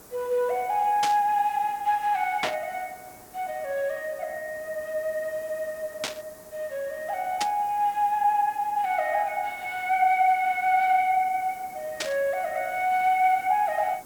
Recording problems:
background hiss; SNR 22 dB
burst of static; 5 times, first at 1 s; peak +2 dB vs average level

